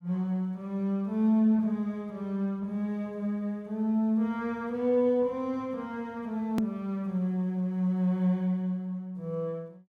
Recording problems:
click at an edit; at 6.5 s

